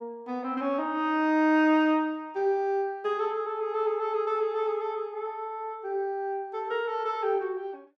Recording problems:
none

